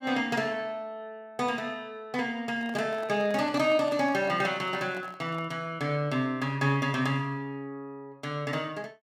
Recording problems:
microphone handling noise; from 2.5 to 5.5 s; peak -8 dB vs average level

